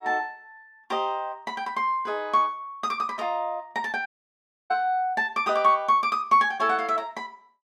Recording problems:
audio cutting out; at 4 s for 0.5 s

